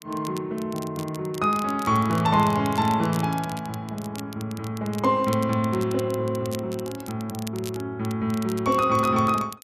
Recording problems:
crackle; vinyl, SNR 18 dB

